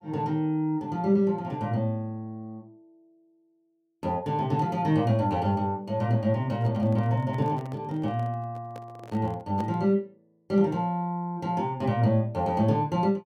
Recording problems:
handling noise; from 6.5 to 10 s; peak -9 dB vs average level

